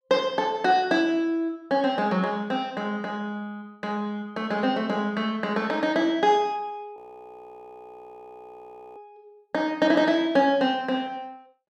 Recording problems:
frozen audio; at 7 s for 2 s

